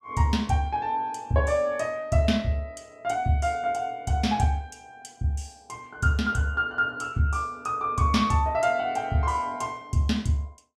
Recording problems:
none

